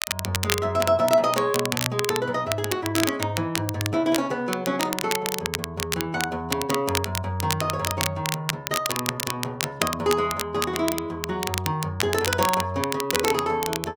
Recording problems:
crackling; vinyl, SNR 3 dB

